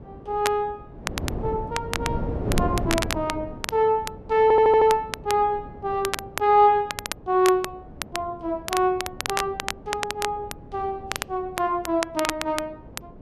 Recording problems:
wind on the microphone; below 380 Hz, SNR 11 dB
crackling; vinyl, SNR 9 dB
stutter; at 4.5 s

